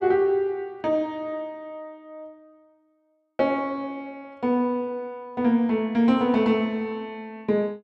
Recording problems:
none

